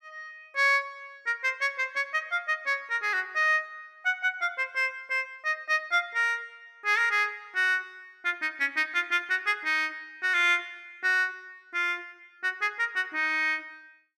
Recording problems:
none

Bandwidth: 15 kHz